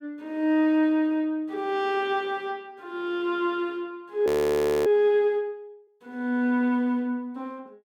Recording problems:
audio freezing; at 4.5 s for 0.5 s

